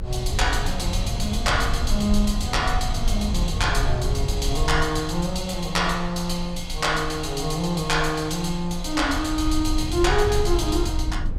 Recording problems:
low-frequency rumble; below 76 Hz, SNR 5 dB

